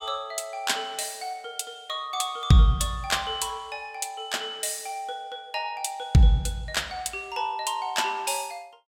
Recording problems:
none

